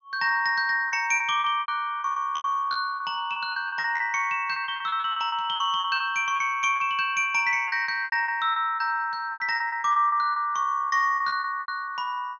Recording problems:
treble cut off; nothing above 6.7 kHz
packet loss; 16% of the sound replaced, filled with repeated pitch periods

